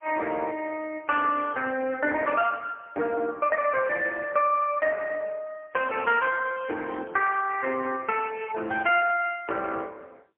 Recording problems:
telephone audio; 280 Hz to 3.2 kHz, AMR-NB, then MP3

